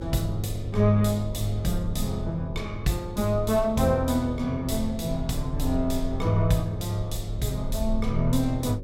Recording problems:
mains hum; 50 Hz, harmonics up to 550 Hz, SNR 15 dB
rumble; below 52 Hz, SNR 11 dB

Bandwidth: 16.5 kHz